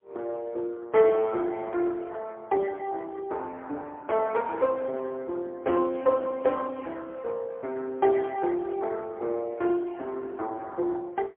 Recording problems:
telephone audio; 300 Hz to 3.2 kHz, AMR-NB, then MP3

